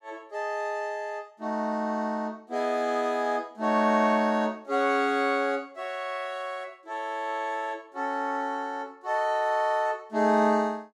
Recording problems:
none

